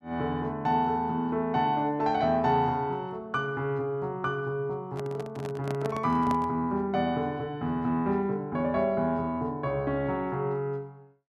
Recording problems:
microphone handling noise; from 5 to 6.5 s; peak -3 dB vs average level

